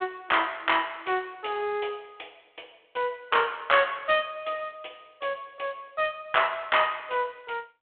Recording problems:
phone line; 280 Hz to 3.5 kHz, G.726

